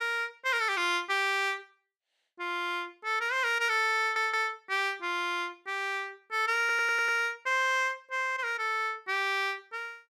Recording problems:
stutter; at 4 s and at 6.5 s

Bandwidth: 14.5 kHz